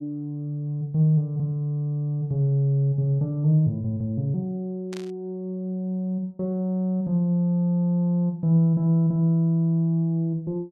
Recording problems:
static burst; at 5 s; peak -13 dB vs average level

